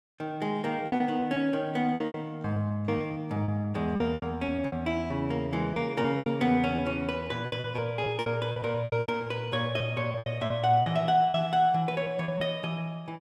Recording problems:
lost packets; 13% of the sound replaced, filled with repeated pitch periods

